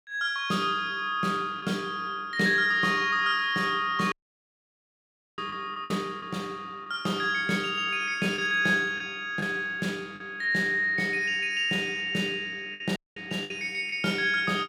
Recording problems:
lost packets; 3% of the sound replaced, filled with the last packet
dropout; at 4 s for 1.5 s and at 13 s

